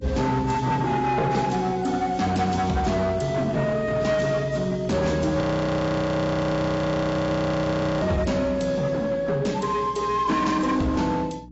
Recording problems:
lossy compression; AAC, log-spectral distance 3 dB, nothing above 7.6 kHz
distorted audio; hard clipping, signal-to-distortion ratio 11 dB
hum; 60 Hz, harmonics up to 300 Hz, SNR 22 dB
audio freezing; at 5.5 s for 2.5 s

